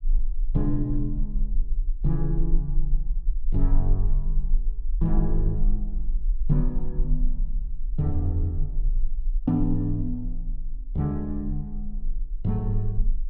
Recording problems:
low-frequency rumble; below 34 Hz, strongest tone 22 Hz, SNR 1 dB

